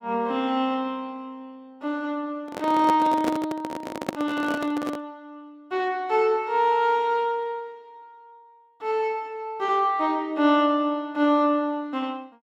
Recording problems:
microphone handling noise; from 2.5 to 5 s; peak +1 dB vs average level

